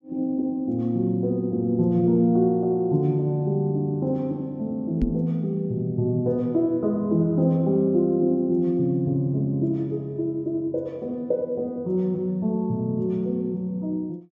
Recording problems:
knock on the microphone; at 5 s; peak +3 dB vs average level

